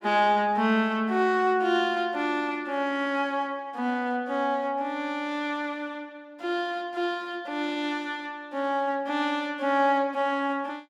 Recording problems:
none

